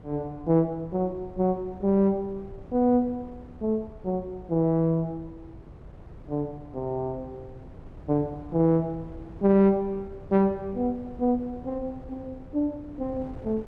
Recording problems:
wind on the microphone; below 270 Hz, SNR 19 dB

